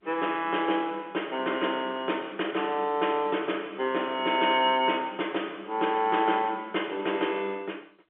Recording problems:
telephone audio; 300 Hz to 3.4 kHz, G.711

